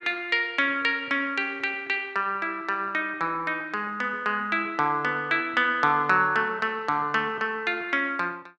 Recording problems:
none

